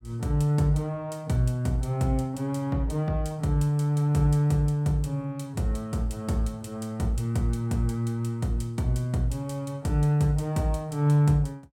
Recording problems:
none

